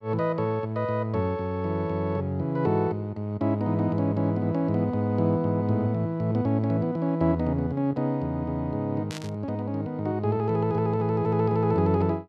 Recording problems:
static burst; at 9 s; peak -7 dB vs average level

